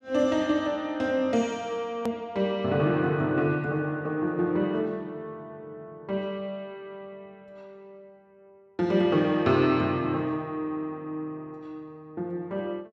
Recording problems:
edit click; at 2 s

